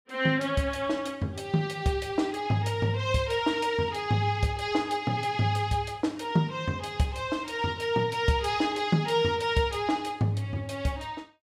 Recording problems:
none

